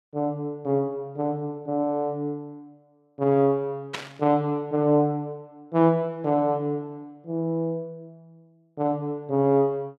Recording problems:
burst of static; at 4 s; peak -2 dB vs average level

